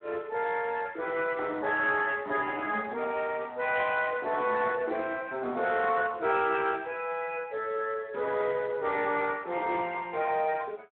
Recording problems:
phone line; 300 Hz to 2.8 kHz, Speex

